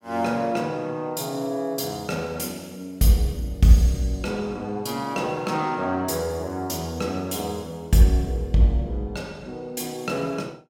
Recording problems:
none

